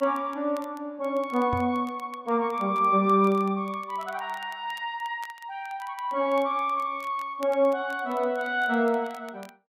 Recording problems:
crackle; vinyl, SNR 27 dB
microphone thump; at 1.5 s; peak 0 dB vs average level

